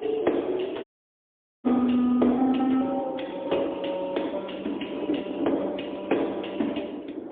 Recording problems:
phone line; 260 Hz to 3.6 kHz, AMR-NB, then MP3
wind noise; below 470 Hz, SNR 8 dB
audio cutting out; at 1 s for 1 s

